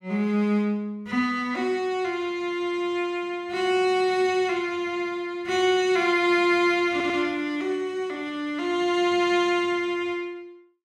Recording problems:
stutter; at 7 s

